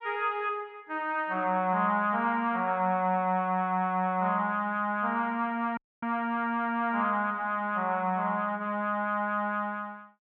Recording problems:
dropout; at 6 s

